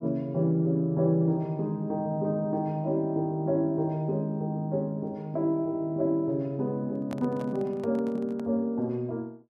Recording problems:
handling noise; from 7 to 8.5 s; peak -8 dB vs average level

